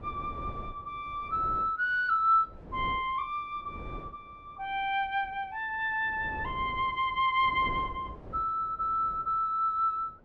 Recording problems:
wind on the microphone; below 400 Hz, SNR 17 dB

